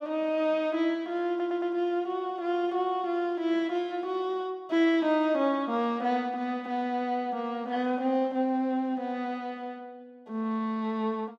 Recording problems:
audio stuttering; at 1.5 s

